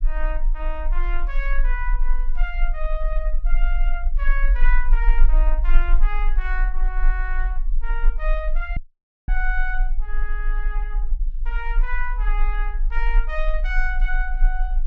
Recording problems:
low-frequency rumble; below 34 Hz, strongest tone 20 Hz, SNR -7 dB
audio cutting out; at 9 s for 0.5 s

